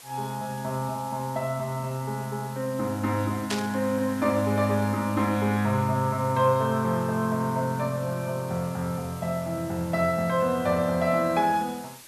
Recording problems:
hiss; slope 0 dB per octave, SNR 19 dB
static burst; at 3.5 s; peak 0 dB vs average level

